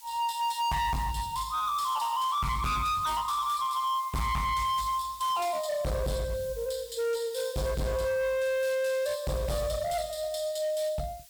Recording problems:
distortion; hard clipping, signal-to-distortion ratio 8 dB
hiss; slope +4 dB per octave, SNR 19 dB

